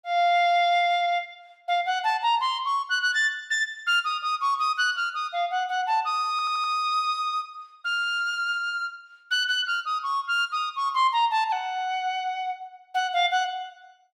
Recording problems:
stutter; at 6.5 s

